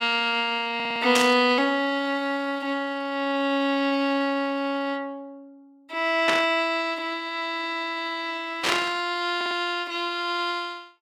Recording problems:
audio stuttering; at 1 s and at 9.5 s
burst of static; at 1 s, at 6.5 s and at 8.5 s; peak +4 dB vs average level

